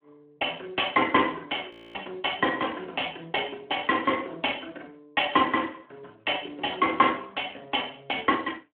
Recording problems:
telephone audio; 280 Hz to 3.3 kHz, Speex
audio freezing; at 1.5 s

